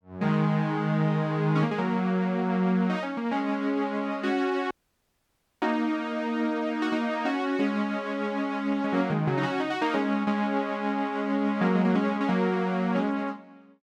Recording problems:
dropout; at 4.5 s for 1 s

